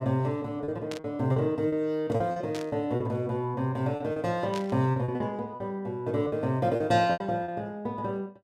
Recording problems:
packet loss; 9% of the sound replaced, filled with repeated pitch periods
static burst; at 1 s, at 2.5 s and at 4.5 s; peak -6 dB vs average level

